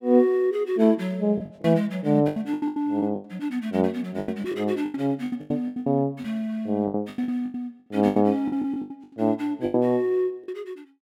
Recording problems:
lost packets; 16% of the sound replaced, filled with the last packet

